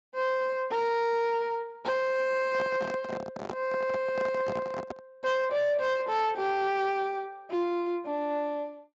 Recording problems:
lossy compression; Speex, log-spectral distance 2 dB
distorted audio; soft clipping, signal-to-distortion ratio 11 dB
microphone handling noise; from 2.5 to 5 s; peak -3 dB vs average level

